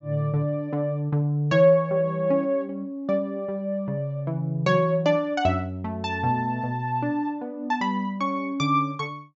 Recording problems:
treble cut off; nothing above 7.4 kHz

